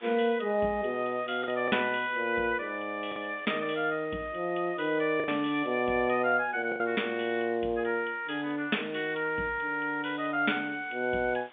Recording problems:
phone line; 170 Hz to 3.6 kHz, G.711
background hiss; SNR 26 dB
packet loss; 2% of the sound replaced, filled with the last packet

